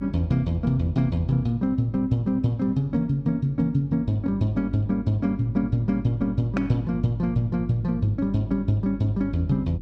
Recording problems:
hum; 50 Hz, harmonics up to 350 Hz, SNR 14 dB

